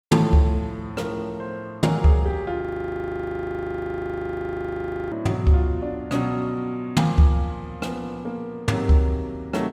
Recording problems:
audio freezing; at 2.5 s for 2.5 s

